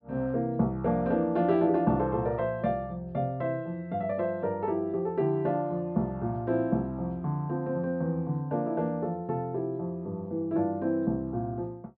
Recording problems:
treble missing; nothing above 5.5 kHz

